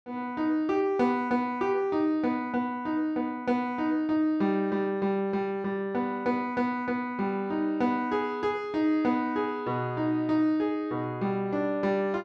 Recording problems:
none

